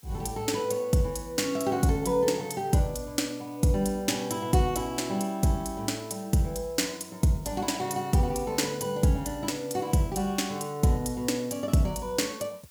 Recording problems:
hiss; slope +1 dB per octave, SNR 25 dB

